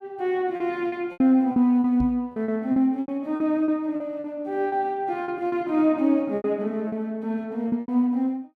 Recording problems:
packet loss; 11% of the sound replaced, filled with repeated pitch periods
microphone thump; at 2 s; peak -2 dB vs average level

